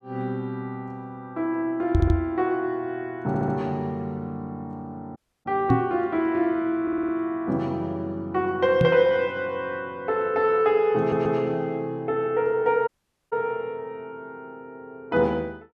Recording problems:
stutter; 4 times, first at 2 s
microphone bump; at 2 s, at 5.5 s and at 9 s; peak +8 dB vs average level
dropout; at 5 s and at 13 s

